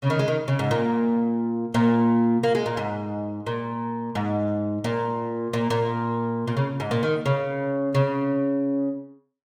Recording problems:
none

